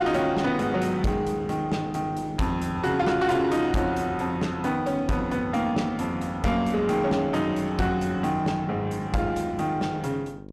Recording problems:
distorted audio; soft clipping, signal-to-distortion ratio 10 dB
mains hum; 50 Hz, harmonics up to 1 kHz, SNR 17 dB

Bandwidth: 14.5 kHz